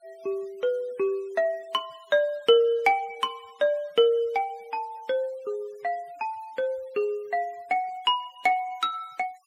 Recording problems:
noise reduction artefacts; signal-to-artefact ratio 27 dB

